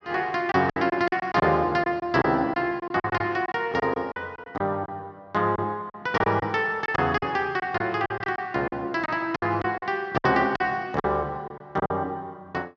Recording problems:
lost packets; 11% of the sound replaced, filled with silence

